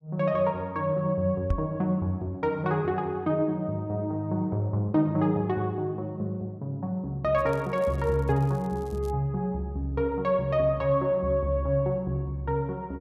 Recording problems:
knock on the microphone; at 1.5 s; peak +4 dB vs average level
crackle; from 7.5 to 9 s; loose cable, SNR 29 dB

